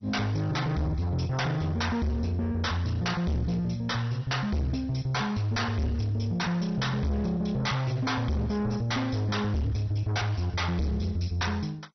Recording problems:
lossy codec; MP2, log-spectral distance 4 dB, nothing above 6 kHz
distorted audio; soft clipping, signal-to-distortion ratio 7 dB

